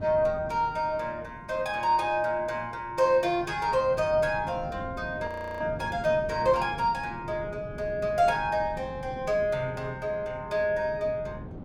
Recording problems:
wind on the microphone; below 280 Hz, SNR 15 dB
frozen audio; at 5.5 s

